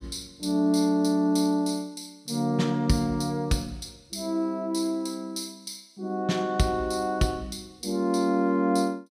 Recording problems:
none

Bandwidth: 15.5 kHz